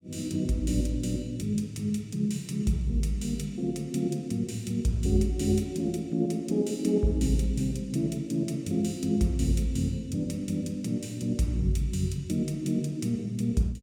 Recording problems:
none

